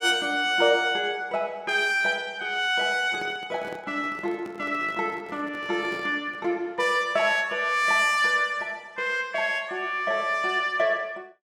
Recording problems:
microphone handling noise; from 3 to 6.5 s; peak -10 dB vs average level

